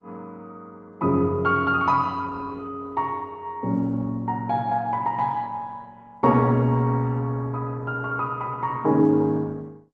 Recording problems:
lossy compression; Opus, log-spectral distance 2 dB

